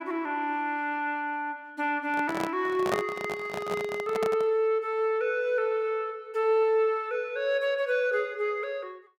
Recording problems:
microphone handling noise; from 2 to 4.5 s; peak +3 dB vs average level

